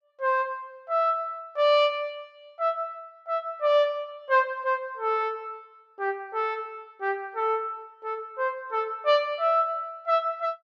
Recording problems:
none

